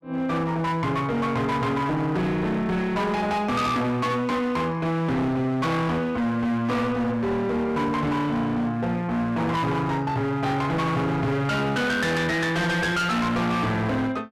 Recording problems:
distorted audio; hard clipping, uneven, signal-to-distortion ratio 7 dB

